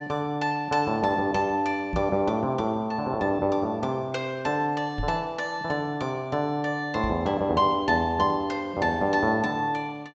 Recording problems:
low-pass filter; nothing above 8 kHz
microphone bump; at 2 s, at 5 s and at 7 s; peak -2 dB vs average level

